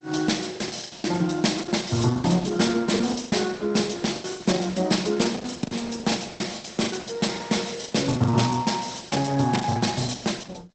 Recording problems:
lossy compression; Opus, log-spectral distance 7 dB, nothing above 8 kHz
packet loss; 16% of the sound replaced, filled with the last packet

